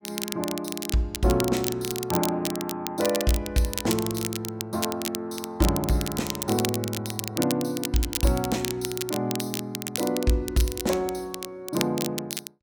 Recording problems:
crackle; vinyl, SNR 5 dB

